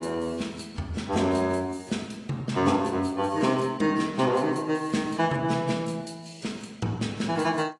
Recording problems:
codec artefacts; AAC, log-spectral distance 4 dB, nothing above 10.4 kHz

